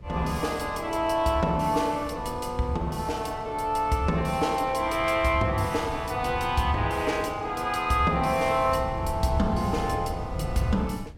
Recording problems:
wind noise; below 150 Hz, SNR 12 dB

